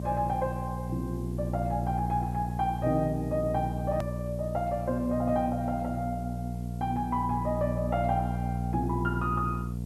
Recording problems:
electrical hum; 60 Hz, harmonics up to 660 Hz, SNR 3 dB
hiss; slope +1 dB per octave, SNR 27 dB
edit click; at 4 s

